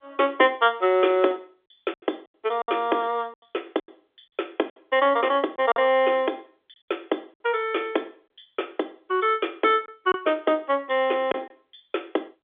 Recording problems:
telephone audio; 280 Hz to 3.6 kHz, G.711
lost packets; 6% of the sound replaced, filled with silence

